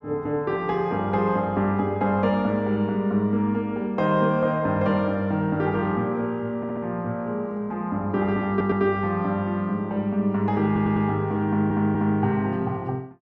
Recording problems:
stutter; 4 times, first at 6.5 s

